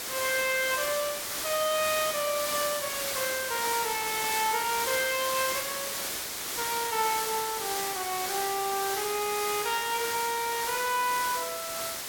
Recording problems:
background hiss; slope 0 dB per octave, SNR 1 dB

